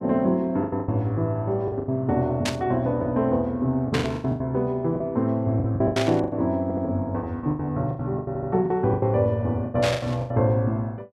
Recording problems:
lost packets; 14% of the sound replaced, filled with the last packet
static burst; 4 times, first at 2.5 s; peak +1 dB vs average level
audio stuttering; at 6.5 s and at 8.5 s

